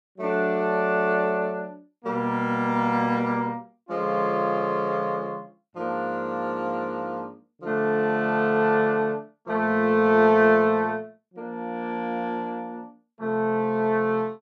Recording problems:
none

